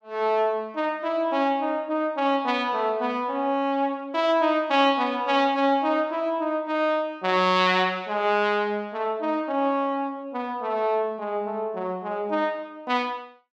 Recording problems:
none

